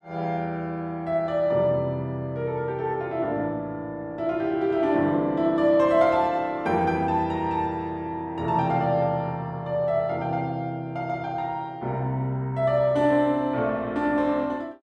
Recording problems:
none

